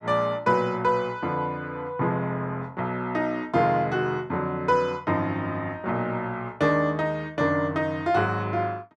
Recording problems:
none

